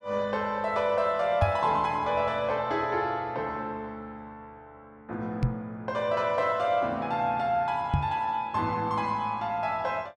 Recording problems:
knock on the microphone; at 1.5 s, at 5.5 s and at 8 s; peak +6 dB vs average level

